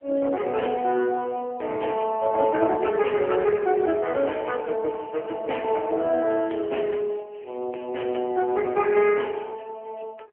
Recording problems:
phone line; 280 Hz to 3.1 kHz, AMR-NB

